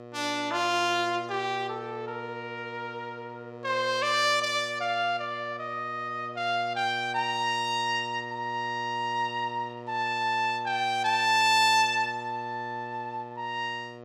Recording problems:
hum; 60 Hz, harmonics up to 2.5 kHz, SNR 15 dB

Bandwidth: 16.5 kHz